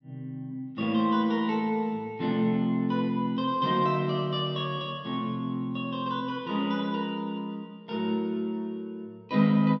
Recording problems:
none

